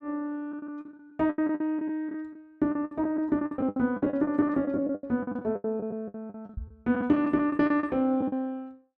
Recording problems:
packet loss; 19% of the sound replaced, filled with the last packet
microphone thump; at 6.5 s; peak -5 dB vs average level

